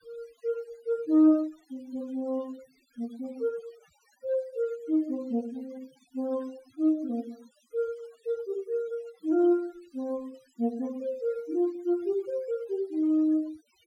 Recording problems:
denoising artefacts; signal-to-artefact ratio 27 dB

